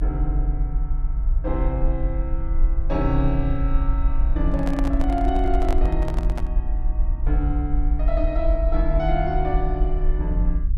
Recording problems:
low-frequency rumble; below 50 Hz, SNR -3 dB
handling noise; from 4.5 to 6.5 s; peak -2 dB vs average level

